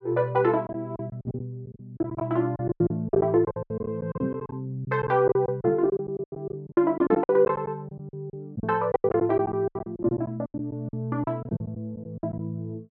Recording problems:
lost packets; 17% of the sound replaced, filled with silence

